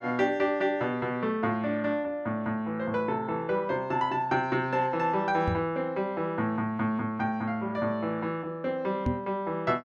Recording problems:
microphone thump; at 5.5 s and at 9 s; peak +5 dB vs average level

